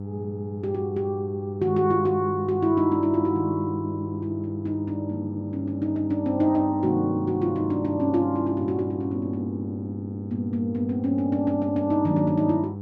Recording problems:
electrical hum; 50 Hz, harmonics up to 900 Hz, SNR 9 dB

